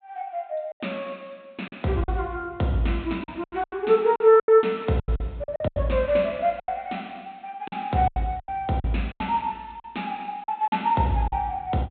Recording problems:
treble missing; nothing above 4 kHz
lost packets; 11% of the sound replaced, filled with silence

